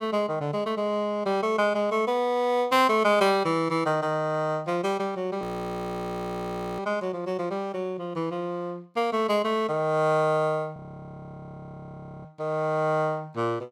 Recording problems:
audio freezing; at 5.5 s for 1.5 s and at 11 s for 1.5 s

